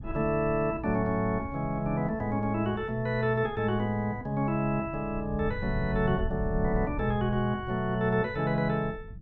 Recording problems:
rumble; below 110 Hz, SNR 12 dB

